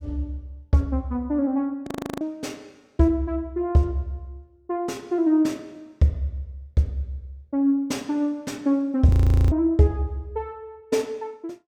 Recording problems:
audio freezing; at 2 s and at 9 s

